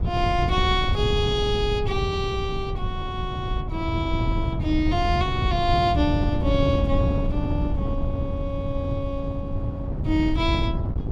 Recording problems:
wind noise; below 140 Hz, SNR 1 dB

